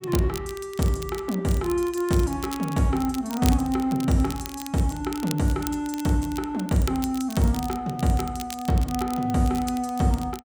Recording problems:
crackle; vinyl, SNR 15 dB

